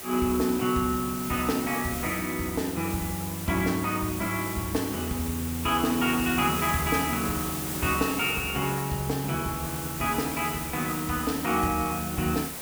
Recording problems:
background hiss; slope -3 dB per octave, SNR 6 dB

